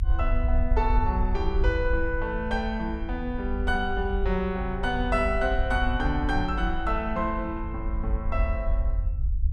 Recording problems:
low-frequency rumble; below 64 Hz, SNR 2 dB

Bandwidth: 13 kHz